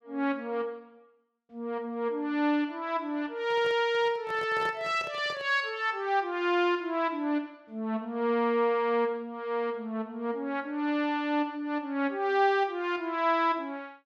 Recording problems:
handling noise; from 3.5 to 5.5 s; peak -7 dB vs average level

